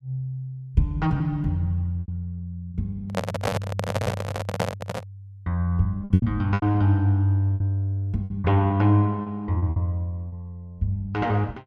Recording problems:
packet loss; 8% of the sound replaced, filled with repeated pitch periods
microphone handling noise; from 3 to 5 s; peak +4 dB vs average level

